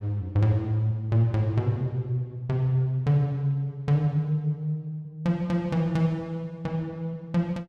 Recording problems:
none

